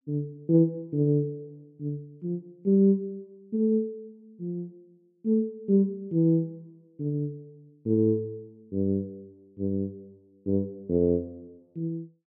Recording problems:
none

